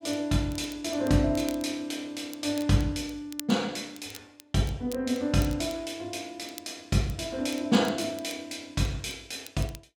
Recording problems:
crackling; vinyl, SNR 18 dB

